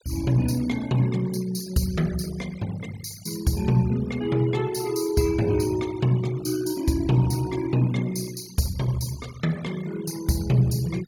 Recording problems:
noise reduction artefacts; signal-to-artefact ratio 20 dB

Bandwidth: 18 kHz